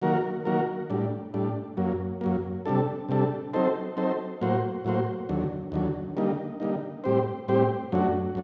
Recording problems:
none

